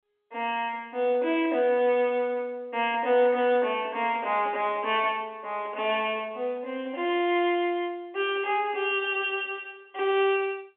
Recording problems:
telephone audio; 260 Hz to 3.5 kHz, G.711

